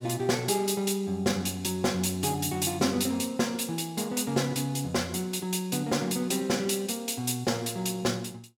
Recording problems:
none

